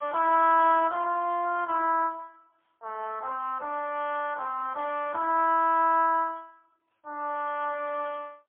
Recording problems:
telephone audio; 260 Hz to 3.2 kHz, AMR-NB, then MP3

